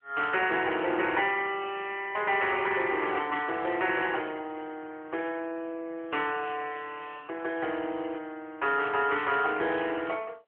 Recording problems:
phone line; 340 Hz to 3.2 kHz, AMR-NB

